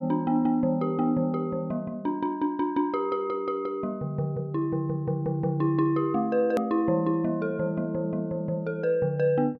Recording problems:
click at an edit; at 6.5 s

